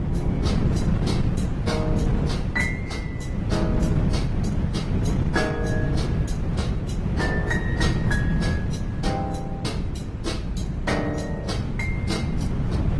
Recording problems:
lossy compression; Opus, then AAC, log-spectral distance 3 dB, nothing above 11.3 kHz
wind on the microphone; below 200 Hz, SNR -5 dB

